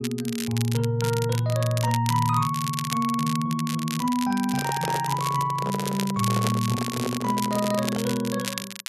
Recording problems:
crackle; vinyl, SNR 9 dB
microphone handling noise; from 4.5 to 8 s; peak -2 dB vs average level

